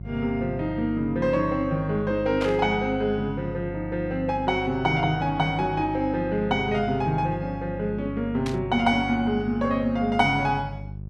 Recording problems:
hum; 50 Hz, harmonics up to 400 Hz, SNR 12 dB
burst of static; at 2.5 s and at 8.5 s; peak -5 dB vs average level

